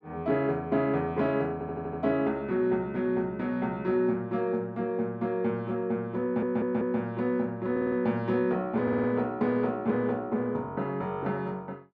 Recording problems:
stutter; 4 times, first at 1.5 s

